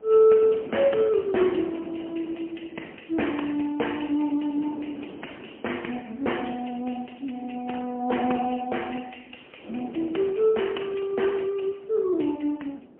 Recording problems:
telephone audio; 220 Hz to 3.2 kHz, AMR-NB, then MP3
wind on the microphone; below 510 Hz, SNR 18 dB

